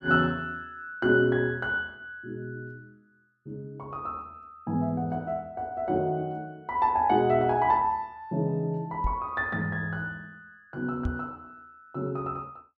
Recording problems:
microphone bump; at 9 s and at 11 s; peak +2 dB vs average level

